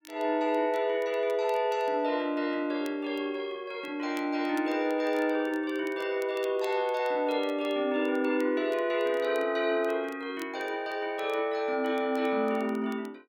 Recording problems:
crackling; vinyl, SNR 27 dB

